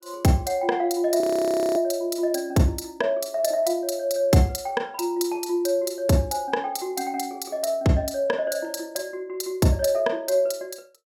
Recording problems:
frozen audio; at 1 s for 0.5 s

